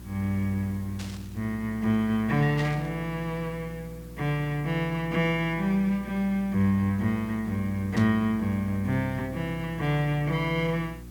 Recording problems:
hum; 60 Hz, harmonics up to 360 Hz, SNR 17 dB
background hiss; slope -3 dB per octave, SNR 26 dB
static burst; at 1 s, at 2.5 s and at 8 s; peak -7 dB vs average level

